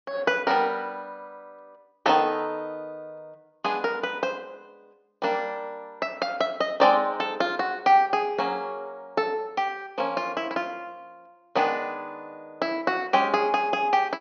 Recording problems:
low-pass filter; nothing above 6.4 kHz

